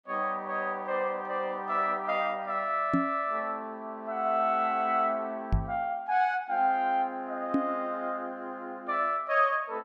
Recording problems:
microphone bump; at 3 s, at 5.5 s and at 7.5 s; peak +6 dB vs average level

